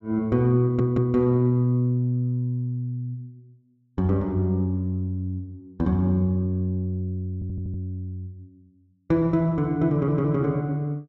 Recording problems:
audio stuttering; at 0.5 s, at 7.5 s and at 10 s

